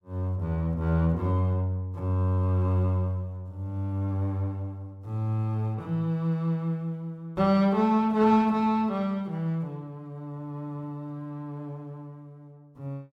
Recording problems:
none

